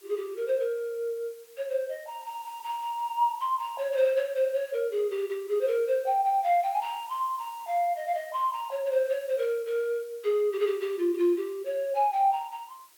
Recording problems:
hiss; slope +1 dB per octave, SNR 24 dB

